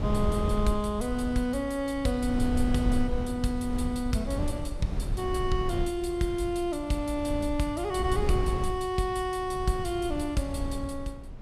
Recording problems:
wind on the microphone; below 100 Hz, SNR 5 dB

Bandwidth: 15 kHz